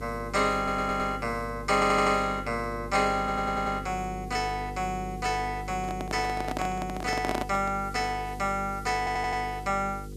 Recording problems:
electrical hum; 50 Hz, harmonics up to 500 Hz, SNR 12 dB
background hiss; SNR 27 dB
audio stuttering; 4 times, first at 0.5 s
handling noise; from 6 to 8 s; peak +1 dB vs average level

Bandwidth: 14 kHz